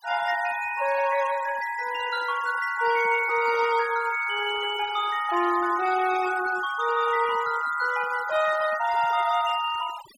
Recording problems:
noise reduction artefacts; signal-to-artefact ratio 14 dB

